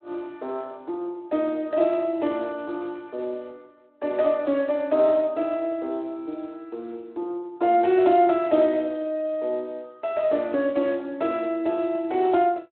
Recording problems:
telephone audio; 260 Hz to 3.8 kHz, Speex

